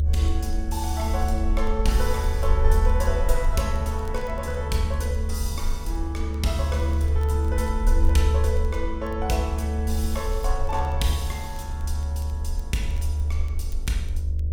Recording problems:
hum; 50 Hz, harmonics up to 600 Hz, SNR 15 dB
rumble; below 74 Hz, SNR -3 dB
crackling; vinyl, SNR 28 dB

